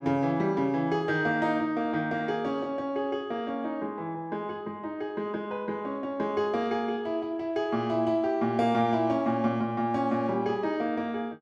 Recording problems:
none

